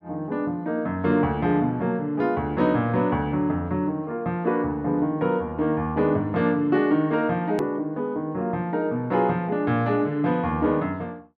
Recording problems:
click at an edit; at 7.5 s

